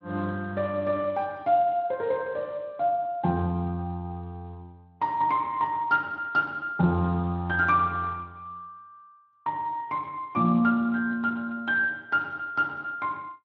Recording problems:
lossy compression; Speex, log-spectral distance 2 dB

